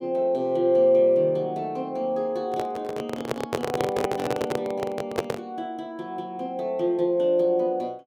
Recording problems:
microphone handling noise; from 2.5 to 5.5 s; peak +4 dB vs average level

